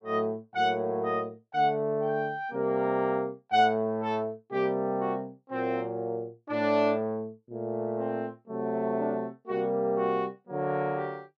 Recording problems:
none

